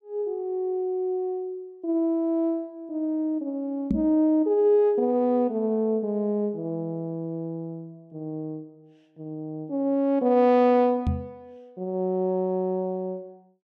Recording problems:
knock on the microphone; at 4 s and at 11 s; peak +3 dB vs average level

